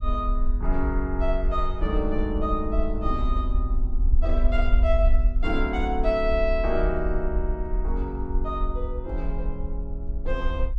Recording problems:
low-frequency rumble; below 50 Hz, SNR -1 dB

